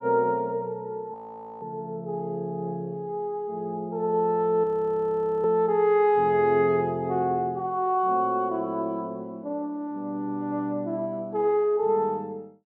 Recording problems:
frozen audio; at 1 s and at 4.5 s for 1 s

